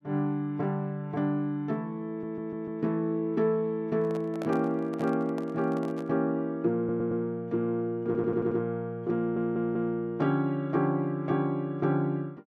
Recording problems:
stutter; 4 times, first at 2 s
handling noise; from 4 to 6 s; peak -6 dB vs average level

